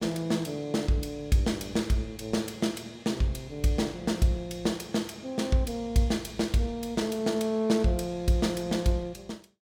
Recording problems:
none

